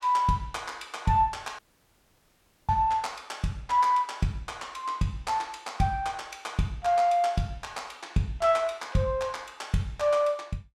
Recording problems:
dropout; at 1.5 s for 1 s

